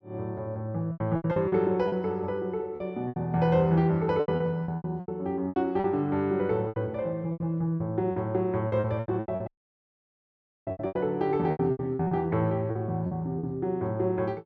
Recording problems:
packet loss; 14% of the sound replaced, filled with repeated pitch periods
dropout; at 9.5 s for 1 s

